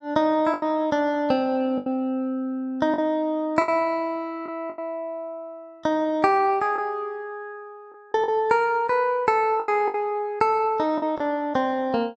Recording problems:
packet loss; 6% of the sound replaced, filled with the last packet

